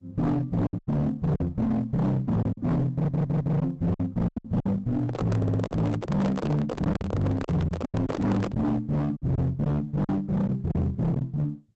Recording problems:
lossy codec; Opus, log-spectral distance 2 dB, nothing above 7.3 kHz
distortion; hard clipping, uneven, signal-to-distortion ratio 6 dB
lost packets; 8% of the sound replaced, filled with silence
stutter; at 3 s and at 5.5 s
handling noise; from 5 to 8.5 s; peak 0 dB vs average level

